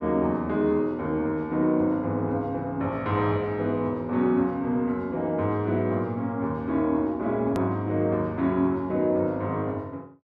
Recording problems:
edit click; at 7.5 s

